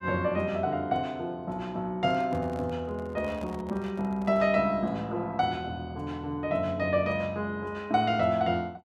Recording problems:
microphone handling noise; from 2 to 4.5 s; peak -11 dB vs average level

